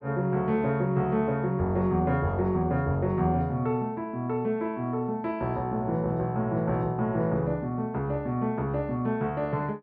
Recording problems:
none

